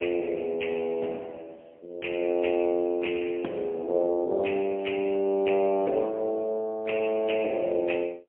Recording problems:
telephone audio; 240 Hz to 3.5 kHz, AMR-NB, then MP3

